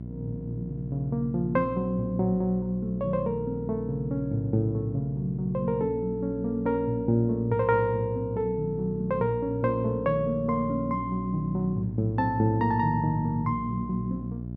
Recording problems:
hum; 60 Hz, harmonics up to 660 Hz, SNR 9 dB

